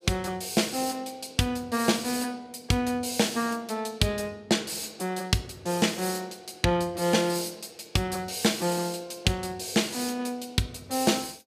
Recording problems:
none

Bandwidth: 15 kHz